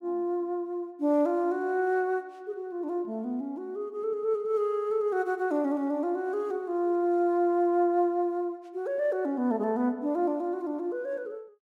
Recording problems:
none

